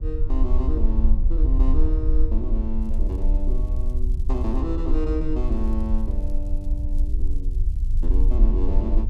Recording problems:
rumble; below 48 Hz, strongest tone 22 Hz, SNR -7 dB
crackle; from 3 to 4.5 s and from 5.5 to 8.5 s; loose cable, SNR 29 dB

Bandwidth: 12.5 kHz